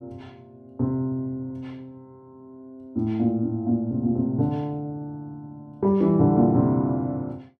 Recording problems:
none

